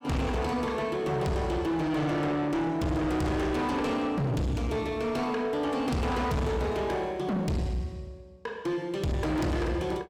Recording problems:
distorted audio; soft clipping, signal-to-distortion ratio 6 dB

